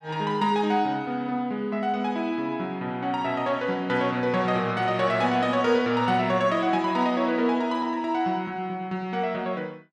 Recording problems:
none

